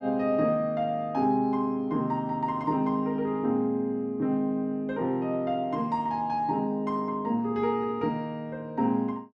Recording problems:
none

